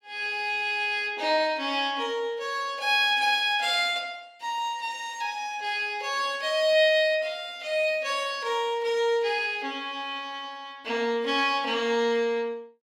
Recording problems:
none

